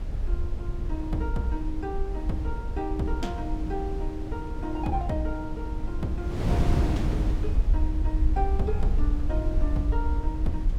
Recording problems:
low-frequency rumble; below 60 Hz, SNR -1 dB
wind noise; below 200 Hz, SNR 1 dB

